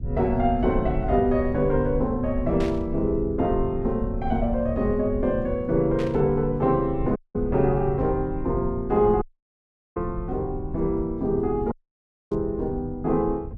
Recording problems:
rumble; below 98 Hz, SNR 9 dB
burst of static; at 2.5 s, at 6 s and at 12 s; peak -10 dB vs average level
audio cutting out; at 7 s, at 9 s for 0.5 s and at 12 s for 0.5 s

